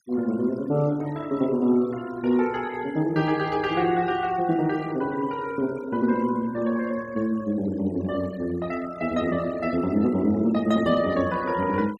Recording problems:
noise reduction artefacts; signal-to-artefact ratio 19 dB

